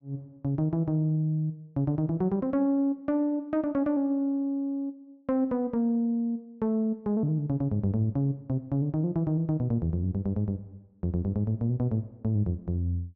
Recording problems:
none

